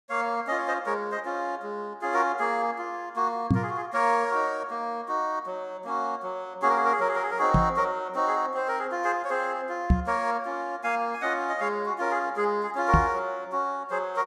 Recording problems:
knock on the microphone; 4 times, first at 3.5 s; peak +10 dB vs average level

